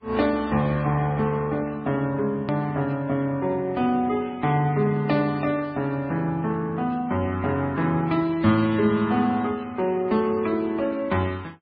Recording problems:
low-pass filter; nothing above 4.2 kHz
lossy codec; MP3, then Vorbis, log-spectral distance 2 dB
edit click; at 2.5 s

